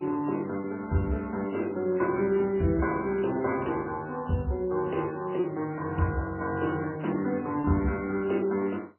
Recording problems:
lossy codec; MP3, then MP2, log-spectral distance 4 dB
lost packets; 2% of the sound replaced, filled with repeated pitch periods

